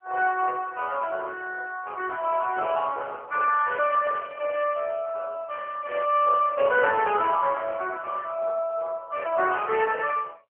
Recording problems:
telephone audio; 370 Hz to 2.9 kHz, AMR-NB

